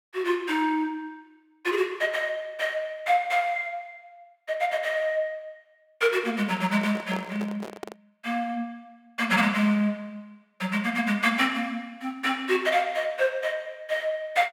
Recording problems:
handling noise; from 6.5 to 8 s; peak -6 dB vs average level

